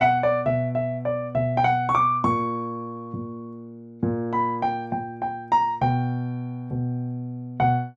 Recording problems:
none

